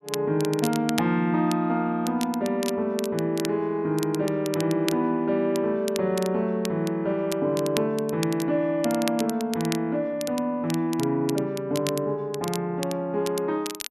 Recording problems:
crackling; vinyl, SNR 12 dB

